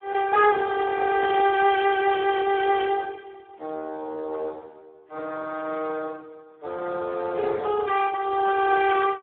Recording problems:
telephone audio; 320 Hz to 2.7 kHz, Speex

